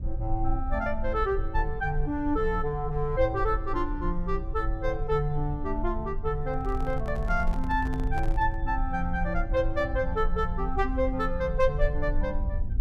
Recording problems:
low-frequency rumble; below 54 Hz, strongest tone 20 Hz, SNR 4 dB
microphone handling noise; from 6.5 to 8.5 s; peak -7 dB vs average level

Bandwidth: 14.5 kHz